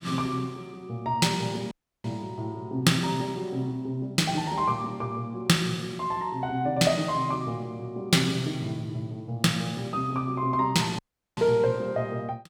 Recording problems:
audio cutting out; at 1.5 s and at 11 s

